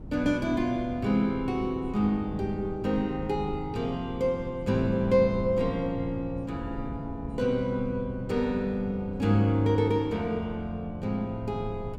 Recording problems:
wind on the microphone; below 200 Hz, SNR 13 dB

